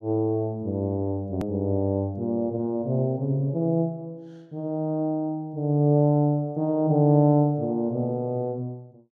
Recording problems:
hard cut with a click; at 1.5 s

